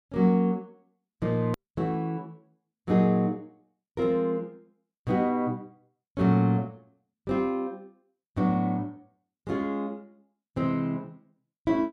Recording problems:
hard cut with a click; at 1.5 s

